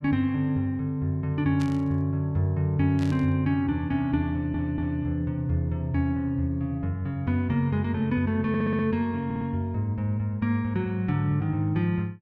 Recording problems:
burst of static; at 1.5 s and at 3 s; peak -11 dB vs average level
stutter; at 4.5 s, at 8.5 s and at 9.5 s

